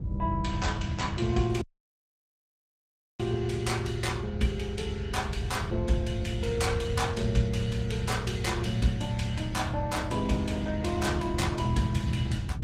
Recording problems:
lossy compression; Opus, log-spectral distance 3 dB, nothing above 18.3 kHz
wind on the microphone; below 120 Hz, SNR 4 dB
dropout; at 1.5 s for 1.5 s

